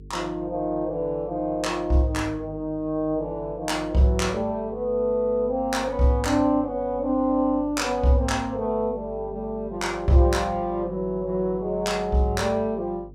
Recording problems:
hum; 50 Hz, harmonics up to 450 Hz, SNR 19 dB

